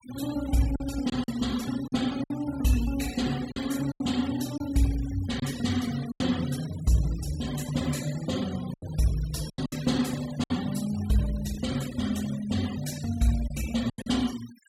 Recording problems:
denoising artefacts; signal-to-artefact ratio 15 dB
packet loss; 6% of the sound replaced, filled with silence

